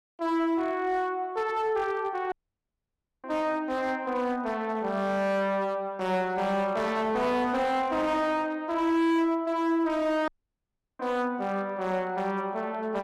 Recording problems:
distorted audio; hard clipping, uneven, signal-to-distortion ratio 11 dB
audio cutting out; at 2.5 s for 1 s and at 10 s for 0.5 s

